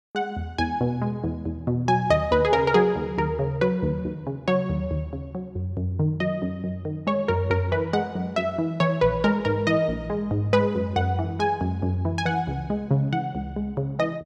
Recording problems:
none

